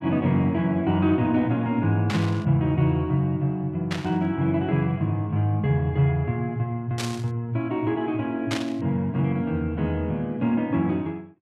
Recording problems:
static burst; 4 times, first at 2 s; peak -1 dB vs average level

